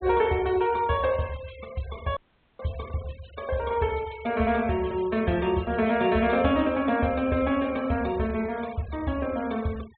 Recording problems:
treble missing; nothing above 4 kHz
denoising artefacts; signal-to-artefact ratio 21 dB
audio cutting out; at 2 s

